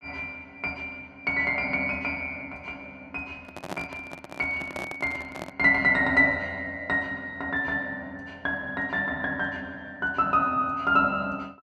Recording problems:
microphone handling noise; from 3.5 to 5.5 s; peak -4 dB vs average level

